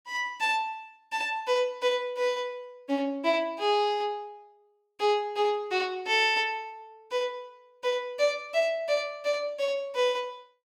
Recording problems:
none

